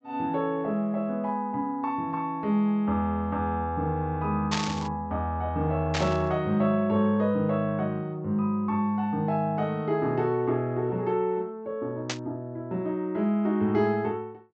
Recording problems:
low-pass filter; nothing above 8 kHz
burst of static; at 4.5 s, at 6 s and at 12 s; peak +2 dB vs average level

